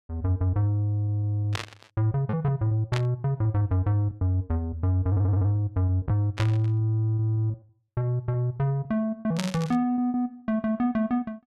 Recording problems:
lost packets; 10% of the sound replaced, filled with repeated pitch periods
static burst; 4 times, first at 1.5 s; peak -2 dB vs average level
stutter; at 5 s

